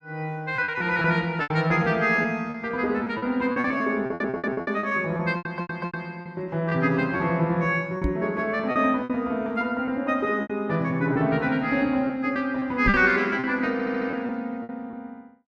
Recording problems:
packet loss; 10% of the sound replaced, filled with repeated pitch periods
audio stuttering; at 4 s, at 5.5 s and at 14 s
knock on the microphone; at 8 s and at 13 s; peak +2 dB vs average level

